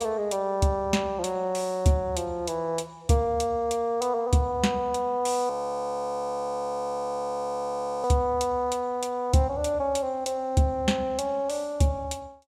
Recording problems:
audio freezing; at 5.5 s for 2.5 s

